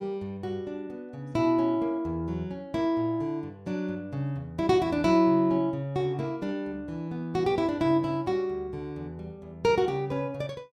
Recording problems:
none

